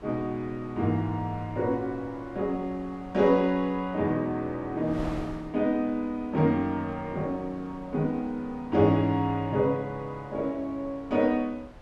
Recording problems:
wind noise; below 700 Hz, SNR 19 dB

